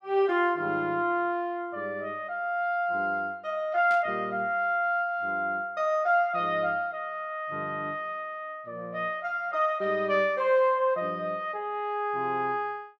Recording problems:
static burst; at 4 s; peak -12 dB vs average level

